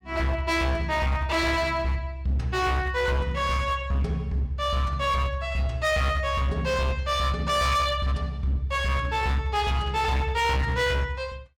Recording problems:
distortion; hard clipping, signal-to-distortion ratio 10 dB

